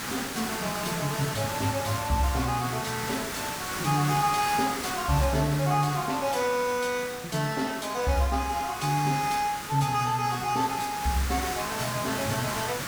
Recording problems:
background hiss; SNR 6 dB

